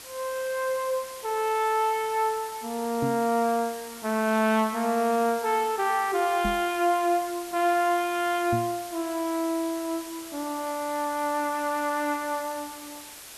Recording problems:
hiss; slope 0 dB per octave, SNR 14 dB
knock on the microphone; at 3 s, at 6.5 s and at 8.5 s; peak 0 dB vs average level

